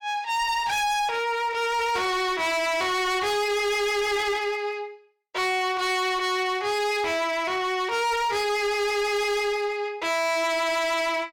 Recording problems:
distorted audio; hard clipping, signal-to-distortion ratio 7 dB

